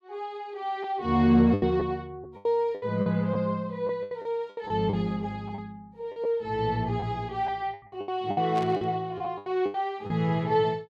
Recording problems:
lost packets; 11% of the sound replaced, filled with the last packet
burst of static; at 8.5 s; peak -9 dB vs average level

